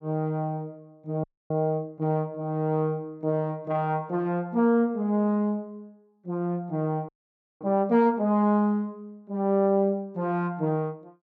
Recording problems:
audio freezing; at 1 s and at 7 s for 0.5 s

